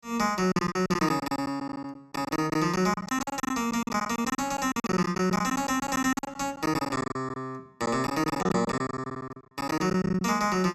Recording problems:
lost packets; 18% of the sound replaced, filled with silence

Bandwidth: 13.5 kHz